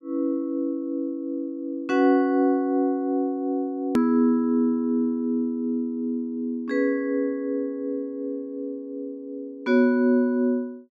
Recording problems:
edit click; at 4 s

